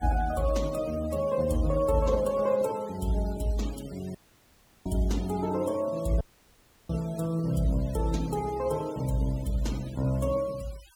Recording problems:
noise reduction artefacts; signal-to-artefact ratio 20 dB
dropout; at 4 s for 0.5 s and at 6 s for 0.5 s

